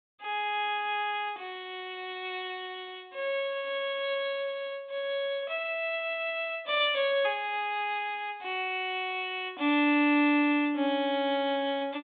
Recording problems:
low-pass filter; nothing above 4 kHz

